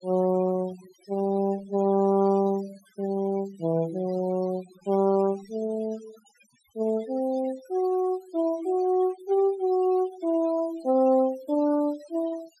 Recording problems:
denoising artefacts; signal-to-artefact ratio 22 dB

